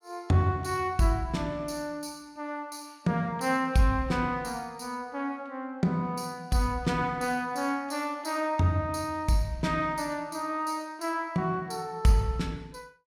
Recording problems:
none

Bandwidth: 18 kHz